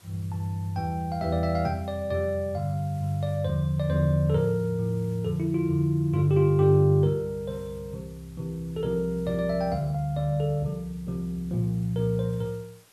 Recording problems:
background hiss; slope -1 dB per octave, SNR 29 dB

